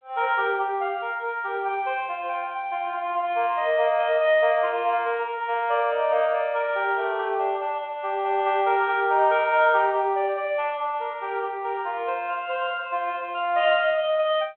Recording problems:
phone line; 340 Hz to 3.5 kHz, G.726

